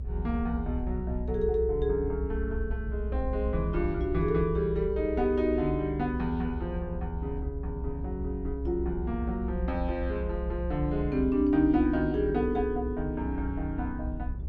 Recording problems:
low-frequency rumble; below 66 Hz, strongest tone 62 Hz, SNR 5 dB

